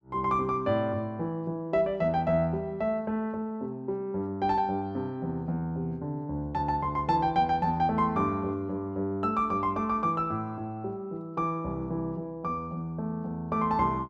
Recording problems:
none

